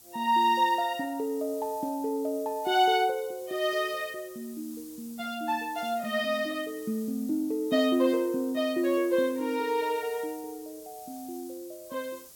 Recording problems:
background hiss; SNR 20 dB

